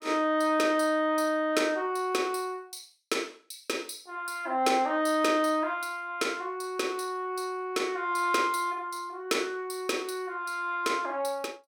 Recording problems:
none

